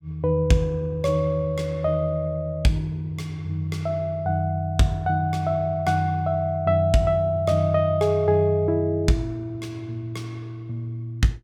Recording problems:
none

